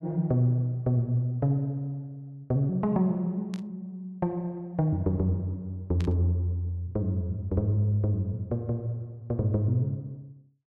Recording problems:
static burst; at 3.5 s and at 6 s; peak -11 dB vs average level

